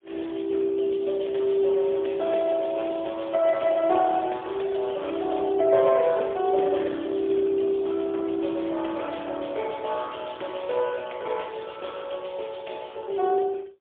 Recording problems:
phone line; 300 Hz to 3.5 kHz, AMR-NB, then MP3

